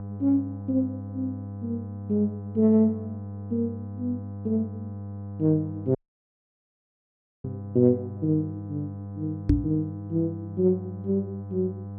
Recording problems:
hum; 50 Hz, harmonics up to 1 kHz, SNR 10 dB
dropout; at 6 s for 1.5 s
microphone bump; at 9.5 s; peak +9 dB vs average level

